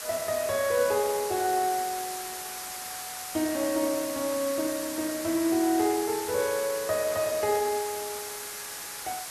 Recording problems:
background hiss; SNR 7 dB

